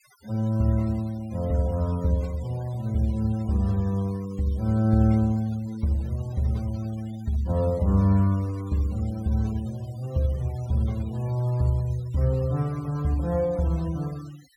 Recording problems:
noise reduction artefacts; signal-to-artefact ratio 24 dB

